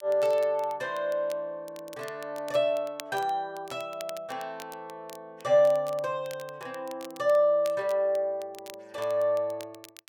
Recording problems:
crackle; vinyl, SNR 21 dB

